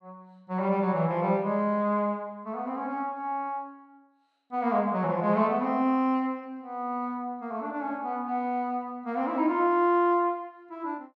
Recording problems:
none

